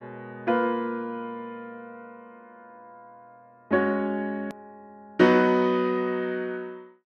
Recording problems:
click at an edit; at 4.5 s

